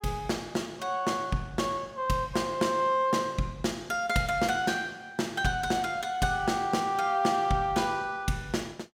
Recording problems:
none

